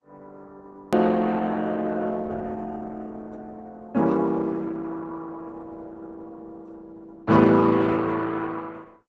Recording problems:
codec artefacts; Opus, log-spectral distance 3 dB, nothing above 13.1 kHz
hard cut with a click; at 1 s

